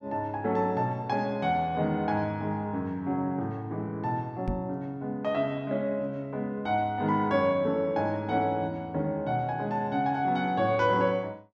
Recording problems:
microphone thump; at 4.5 s; peak 0 dB vs average level

